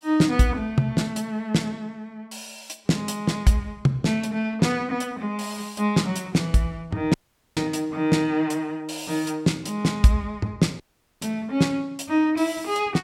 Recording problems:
audio cutting out; at 7 s and at 11 s

